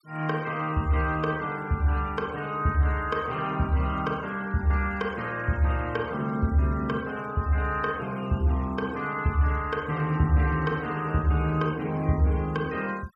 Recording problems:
noise reduction artefacts; signal-to-artefact ratio 24 dB

